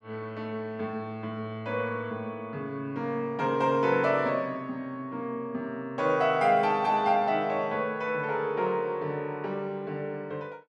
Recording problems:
none

